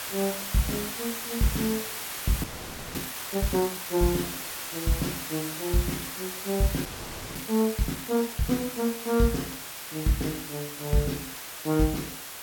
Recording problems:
hiss; slope 0 dB per octave, SNR 5 dB
audio freezing; at 2.5 s for 0.5 s and at 7 s

